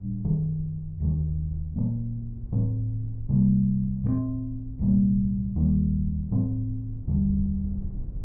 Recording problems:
low-frequency rumble; below 84 Hz, SNR 15 dB

